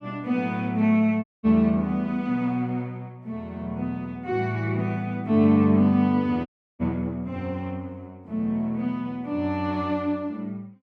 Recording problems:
dropout; at 1 s and at 6.5 s

